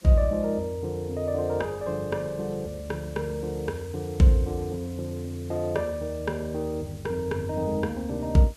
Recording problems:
background hiss; SNR 23 dB

